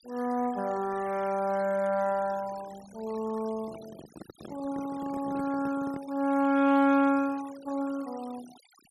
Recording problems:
denoising artefacts; signal-to-artefact ratio 21 dB
handling noise; from 3.5 to 6 s; peak -10 dB vs average level

